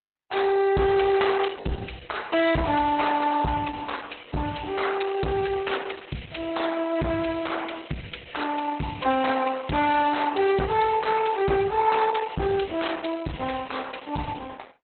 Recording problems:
lossy compression; Opus, log-spectral distance 5 dB, nothing above 4 kHz
distorted audio; hard clipping, signal-to-distortion ratio 8 dB

